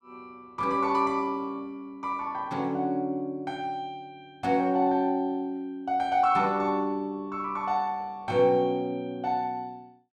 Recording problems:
none

